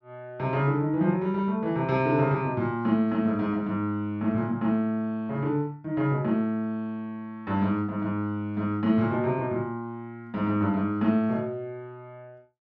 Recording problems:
none

